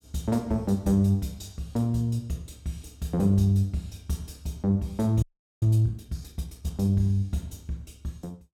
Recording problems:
audio freezing; at 5 s

